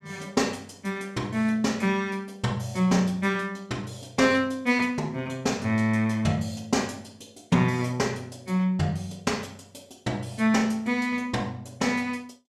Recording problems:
none

